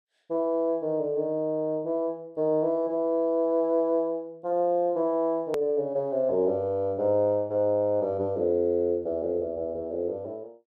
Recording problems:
edit click; at 5.5 s

